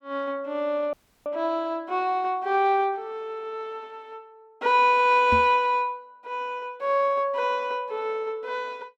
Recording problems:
audio cutting out; at 1 s
knock on the microphone; at 5.5 s; peak -2 dB vs average level

